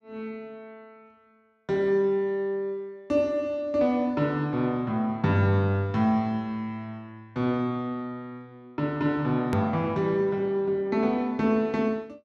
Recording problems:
hard cut with a click; at 9.5 s

